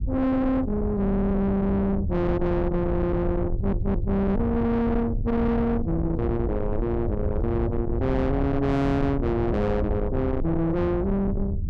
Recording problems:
distortion; soft clipping, signal-to-distortion ratio 8 dB
low-frequency rumble; below 190 Hz, SNR 5 dB
stutter; at 1 s and at 3.5 s

